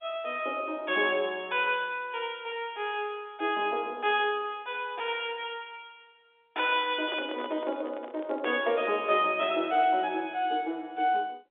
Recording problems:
telephone audio; 280 Hz to 3.7 kHz, G.711
microphone handling noise; from 7 to 9 s; peak -3 dB vs average level

